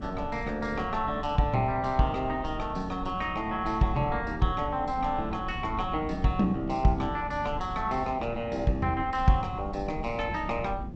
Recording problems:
lossy codec; G.722, then MP2, log-spectral distance 2 dB
wind on the microphone; below 190 Hz, SNR 11 dB

